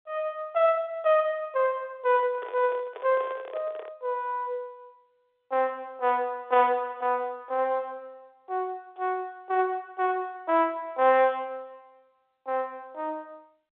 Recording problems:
phone line; 340 Hz to 3.9 kHz, G.711
microphone handling noise; from 2 to 4 s; peak -8 dB vs average level

